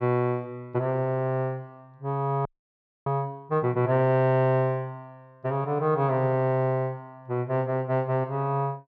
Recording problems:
frozen audio; at 2.5 s for 0.5 s

